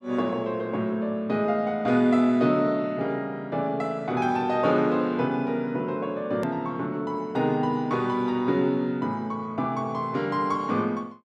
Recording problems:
hard cut with a click; at 6.5 s

